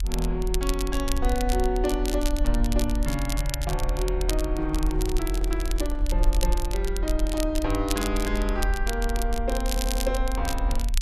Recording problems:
rumble; below 44 Hz, strongest tone 42 Hz, SNR 0 dB
crackling; vinyl, SNR 7 dB
microphone handling noise; from 4.5 to 6.5 s; peak -12 dB vs average level
stutter; at 9.5 s

